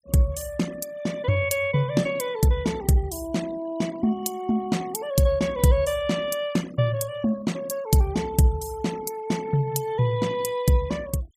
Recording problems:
noise reduction artefacts; signal-to-artefact ratio 20 dB

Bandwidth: 15.5 kHz